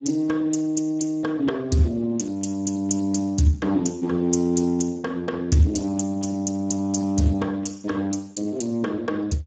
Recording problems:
lossy codec; Speex, log-spectral distance 3 dB, nothing above 7.3 kHz

